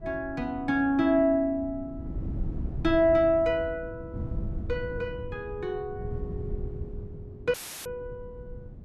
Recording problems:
wind noise; below 140 Hz, SNR 11 dB
audio cutting out; at 7.5 s; filled with static

